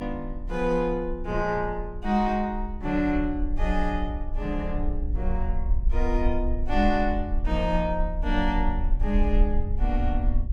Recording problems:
rumble; below 54 Hz, SNR 3 dB

